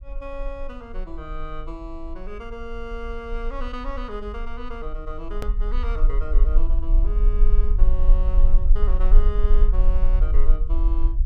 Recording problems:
low-frequency rumble; below 38 Hz, strongest tone 20 Hz, SNR -13 dB
click at an edit; at 5.5 s

